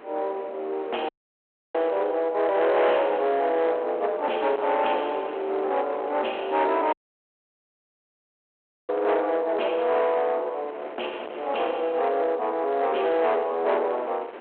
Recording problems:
phone line; 370 Hz to 3.3 kHz, G.726
distorted audio; soft clipping, signal-to-distortion ratio 10 dB
wind on the microphone; below 1.3 kHz, SNR 16 dB
audio cutting out; at 1 s for 0.5 s and at 7 s for 2 s

